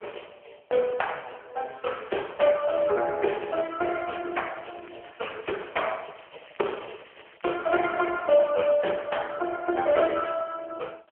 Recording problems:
phone line; 370 Hz to 3.2 kHz, AMR-NB
crackling; at 2.5 s, from 3.5 to 6 s and from 6 to 8.5 s; loose cable, SNR 23 dB

